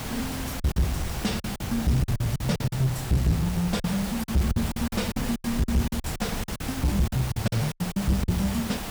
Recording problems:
distorted audio; soft clipping, signal-to-distortion ratio 10 dB
background hiss; slope -3 dB per octave, SNR 8 dB
wind noise; below 160 Hz, SNR 11 dB
packet loss; 14% of the sound replaced, filled with silence

